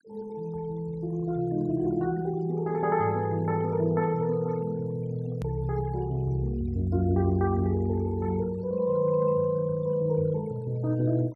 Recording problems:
denoising artefacts; signal-to-artefact ratio 26 dB
edit click; at 5.5 s

